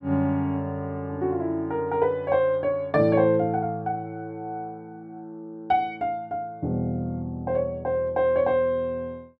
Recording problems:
none

